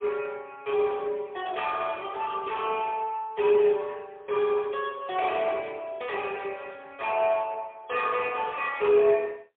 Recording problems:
phone line; 320 Hz to 3.5 kHz, AMR-NB, then MP3

